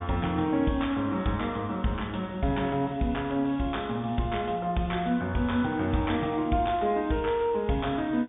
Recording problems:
low-pass filter; nothing above 3.6 kHz

